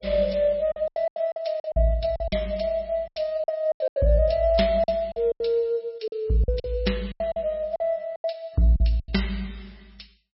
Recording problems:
lossy codec; MP3, log-spectral distance 3 dB, nothing above 5.5 kHz
packet loss; 13% of the sound replaced, filled with silence

